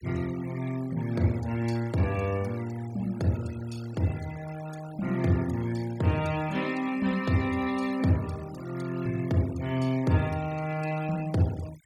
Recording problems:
denoising artefacts; signal-to-artefact ratio 18 dB

